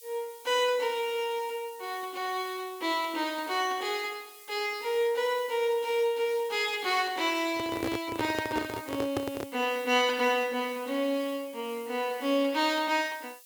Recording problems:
hiss; SNR 20 dB
microphone handling noise; from 7.5 to 9.5 s; peak +2 dB vs average level

